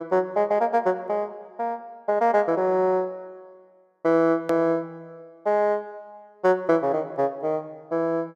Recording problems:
click at an edit; at 4.5 s

